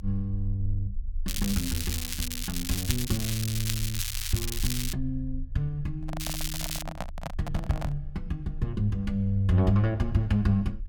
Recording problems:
low-frequency rumble; below 40 Hz, strongest tone 24 Hz, SNR 11 dB
crackling; from 1.5 to 5 s and at 6 s; loose cable, SNR 3 dB
handling noise; from 6 to 8 s; peak 0 dB vs average level

